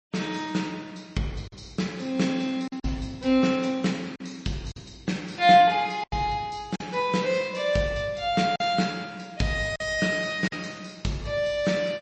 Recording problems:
lossy compression; MP3, log-spectral distance 3 dB, nothing above 7.8 kHz
packet loss; 4% of the sound replaced, filled with silence

